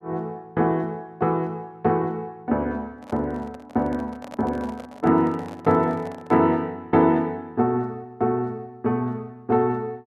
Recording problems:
handling noise; from 3 to 6.5 s; peak -10 dB vs average level

